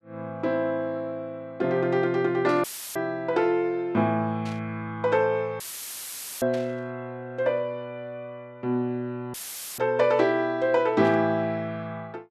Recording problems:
static burst; 4 times, first at 2.5 s; peak -11 dB vs average level
audio cutting out; at 2.5 s, at 5.5 s for 1 s and at 9.5 s; filled with static

